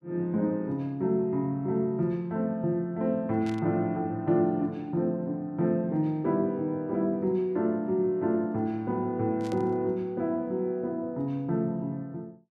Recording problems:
burst of static; at 3.5 s and at 9.5 s; peak -12 dB vs average level

